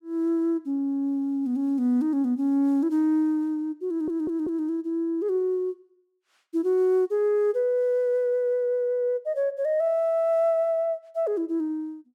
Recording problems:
stutter; at 4 s

